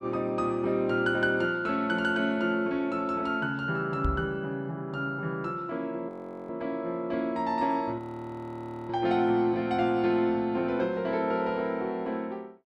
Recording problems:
microphone bump; at 4 s; peak +2 dB vs average level
audio freezing; at 6 s and at 8 s for 1 s

